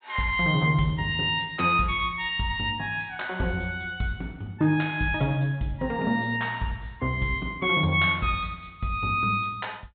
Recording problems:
treble missing; nothing above 4 kHz

